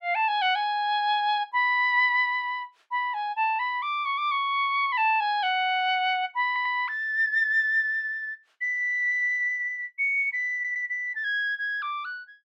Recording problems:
audio stuttering; at 6.5 s and at 11 s

